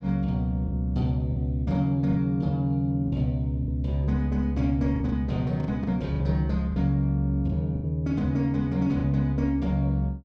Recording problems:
lost packets; 6% of the sound replaced, filled with the last packet

